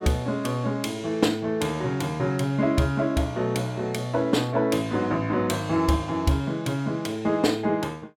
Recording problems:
none

